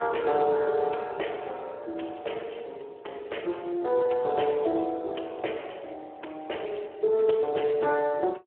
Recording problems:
telephone audio; 300 Hz to 3.2 kHz, Speex

